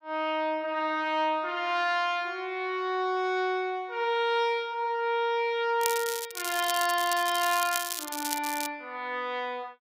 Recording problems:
crackling; from 6 to 8.5 s; loose cable, SNR 5 dB

